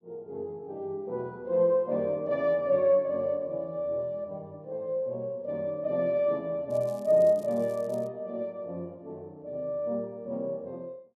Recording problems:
crackling; from 6.5 to 8 s; loose cable, SNR 27 dB

